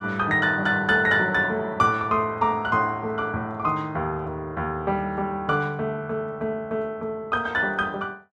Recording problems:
none

